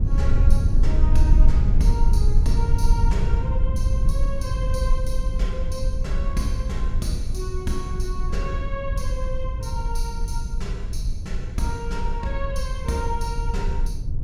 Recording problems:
low-frequency rumble; below 64 Hz, strongest tone 20 Hz, SNR -7 dB

